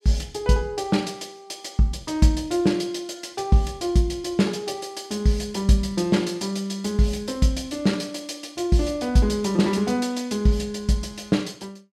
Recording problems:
none

